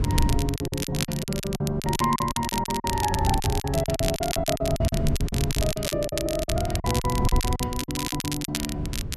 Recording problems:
wind noise; below 140 Hz, SNR 3 dB
crackling; vinyl, SNR 4 dB
packet loss; 18% of the sound replaced, filled with silence

